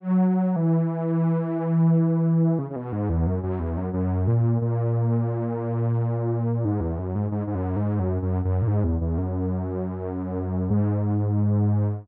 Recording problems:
none

